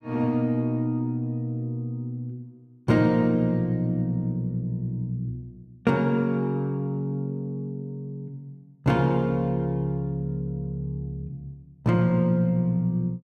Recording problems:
none

